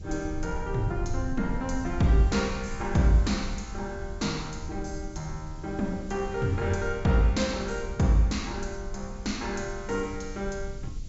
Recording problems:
treble cut off; nothing above 8 kHz
hiss; slope +4 dB per octave, SNR 27 dB
rumble; below 80 Hz, SNR 10 dB

